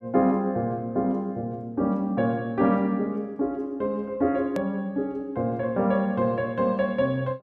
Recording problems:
edit click; at 4.5 s

